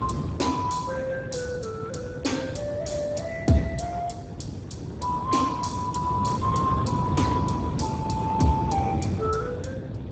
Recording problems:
lossy compression; Speex, log-spectral distance 4 dB, nothing above 7.8 kHz
wind noise; below 300 Hz, SNR 2 dB

